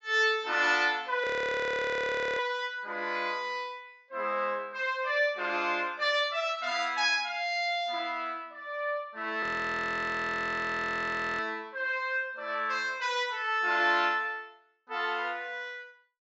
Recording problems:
low-pass filter; nothing above 7.7 kHz
frozen audio; at 1 s for 1 s and at 9.5 s for 2 s

